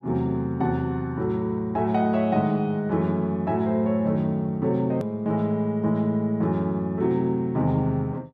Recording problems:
edit click; at 5 s

